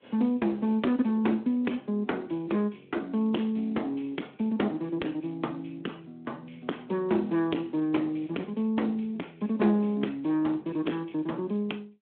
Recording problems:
telephone audio; 190 Hz to 3.9 kHz, Speex
distorted audio; soft clipping, signal-to-distortion ratio 12 dB

